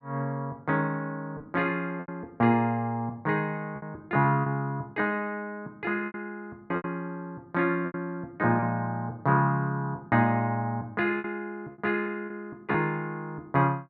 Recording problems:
packet loss; 5% of the sound replaced, filled with repeated pitch periods

